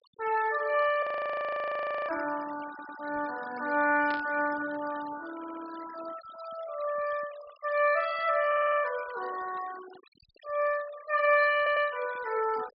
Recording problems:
low-pass filter; nothing above 5.5 kHz
noise reduction artefacts; signal-to-artefact ratio 19 dB
frozen audio; at 1 s for 1 s
stutter; 4 times, first at 2.5 s
static burst; at 4 s; peak -9 dB vs average level

